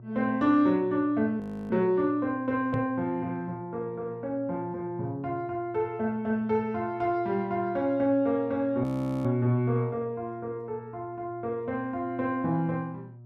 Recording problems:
electrical hum; 60 Hz, harmonics up to 600 Hz, SNR 19 dB
audio freezing; at 1.5 s and at 9 s
microphone bump; at 2.5 s; peak -1 dB vs average level

